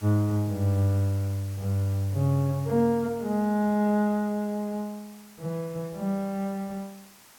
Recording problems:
background hiss; slope -1 dB per octave, SNR 22 dB

